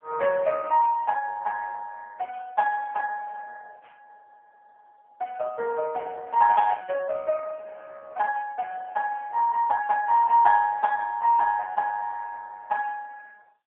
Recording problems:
telephone audio; 410 Hz to 2.2 kHz, AMR-NB

